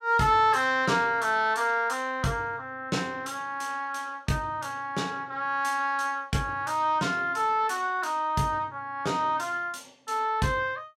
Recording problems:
none

